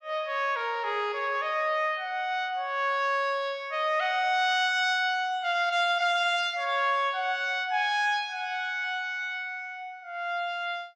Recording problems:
none

